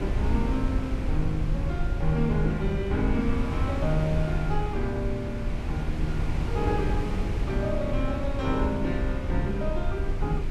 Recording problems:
low-frequency rumble; below 72 Hz, SNR 4 dB
wind noise; below 160 Hz, SNR 2 dB

